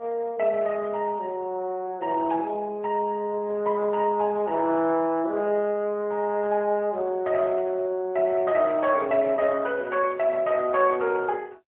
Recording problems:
phone line; 280 Hz to 3.4 kHz, AMR-NB, then MP3

